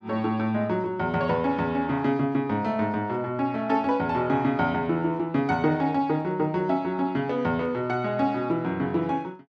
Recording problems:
none

